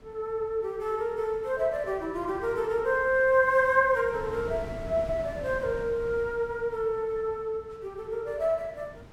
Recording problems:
wind noise; below 380 Hz, SNR 18 dB

